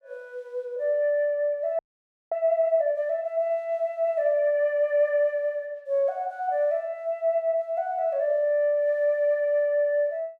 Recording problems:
frozen audio; at 2 s for 0.5 s

